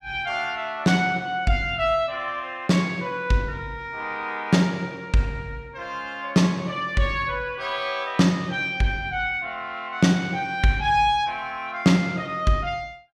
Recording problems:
none

